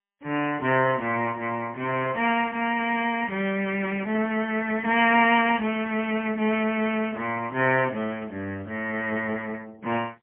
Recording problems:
phone line; 300 Hz to 3.9 kHz, AMR-NB, then MP3

